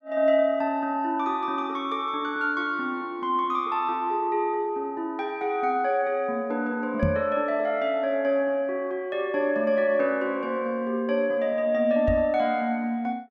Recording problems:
microphone bump; at 7 s and at 12 s; peak +3 dB vs average level

